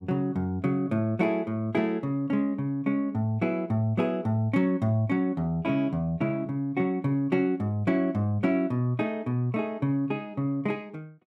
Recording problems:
none

